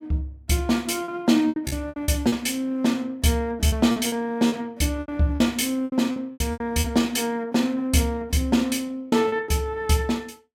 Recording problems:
packet loss; 10% of the sound replaced, filled with repeated pitch periods

